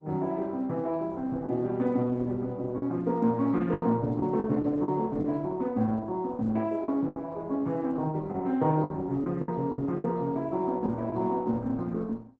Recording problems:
lossy compression; Opus, log-spectral distance 2 dB
lost packets; 6% of the sound replaced, filled with the last packet

